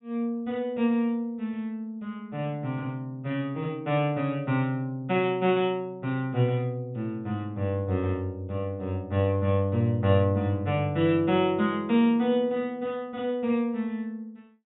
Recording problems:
low-pass filter; nothing above 3.8 kHz

